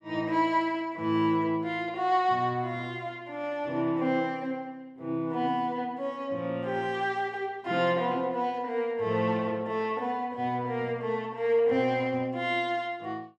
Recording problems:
none

